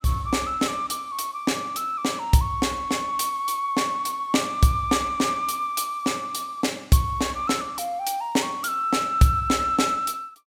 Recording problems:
none

